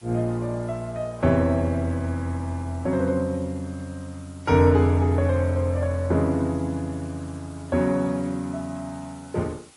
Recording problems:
lossy compression; MP3, then AAC, log-spectral distance 5 dB
background hiss; slope -1 dB per octave, SNR 27 dB

